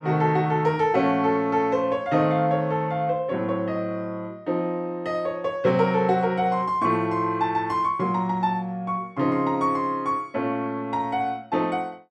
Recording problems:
none

